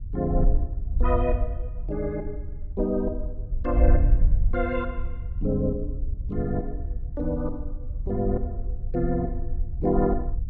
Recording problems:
wind noise; below 60 Hz, SNR 1 dB

